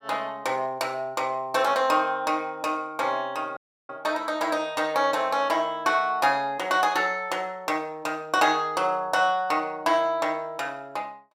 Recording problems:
audio cutting out; at 3.5 s

